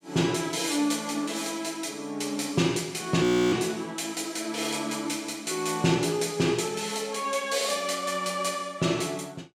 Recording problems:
audio freezing; at 3 s

